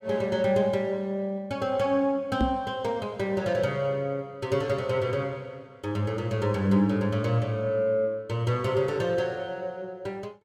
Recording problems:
microphone thump; at 2.5 s; peak +5 dB vs average level

